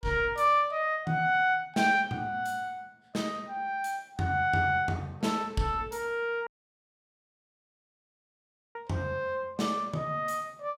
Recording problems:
audio cutting out; at 6.5 s for 2.5 s

